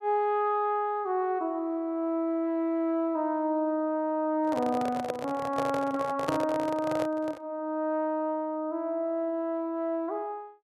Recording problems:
microphone handling noise; from 4.5 to 7.5 s; peak +2 dB vs average level

